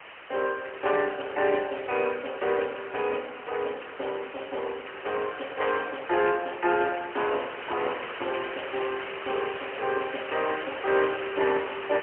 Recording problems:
phone line; 300 Hz to 3.1 kHz, AMR-NB, then MP3
background hiss; SNR 10 dB

